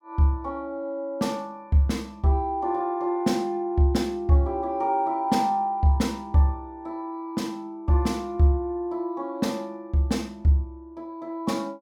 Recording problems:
none

